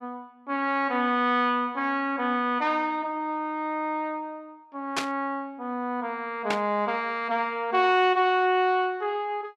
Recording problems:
static burst; at 5 s and at 6.5 s; peak +3 dB vs average level

